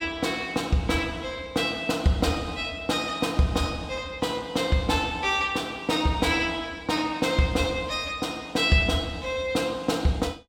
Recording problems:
none

